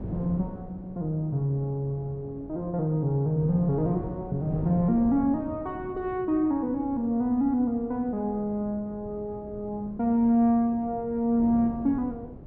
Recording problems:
wind on the microphone; below 320 Hz, SNR 14 dB

